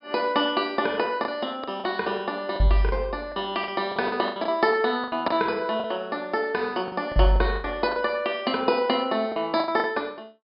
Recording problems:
treble cut off; nothing above 5.5 kHz
packet loss; 10% of the sound replaced, filled with the last packet

